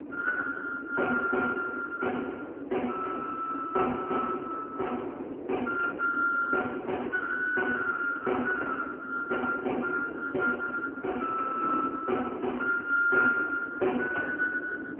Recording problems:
telephone audio; 260 Hz to 3 kHz, AMR-NB
wind on the microphone; below 450 Hz, SNR 10 dB

